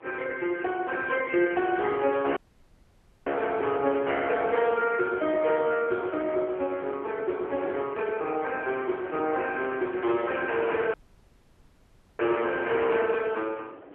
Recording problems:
telephone audio; 280 Hz to 3.3 kHz, AMR-NB
wind noise; below 600 Hz, SNR 20 dB
audio cutting out; at 2.5 s for 1 s and at 11 s for 1.5 s

